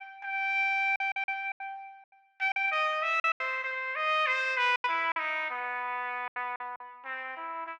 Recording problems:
packet loss; 9% of the sound replaced, filled with silence

